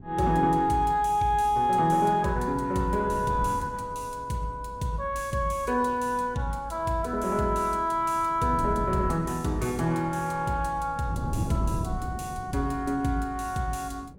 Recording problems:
wind on the microphone; below 210 Hz, SNR 13 dB

